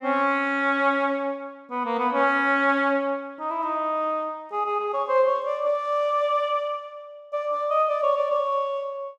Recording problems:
none

